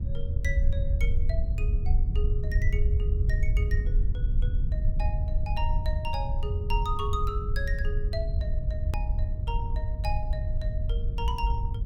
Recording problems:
electrical hum; 60 Hz, harmonics up to 1.3 kHz, SNR 19 dB
rumble; below 74 Hz, SNR -8 dB
hard cut with a click; at 9 s

